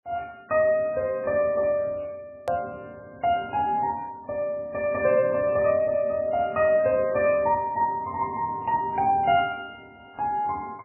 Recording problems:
lossy codec; MP3, log-spectral distance 2 dB, nothing above 2.4 kHz
edit click; at 2.5 s

